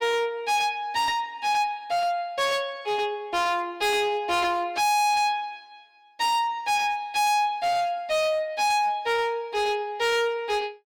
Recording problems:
distortion; hard clipping, uneven, signal-to-distortion ratio 7 dB

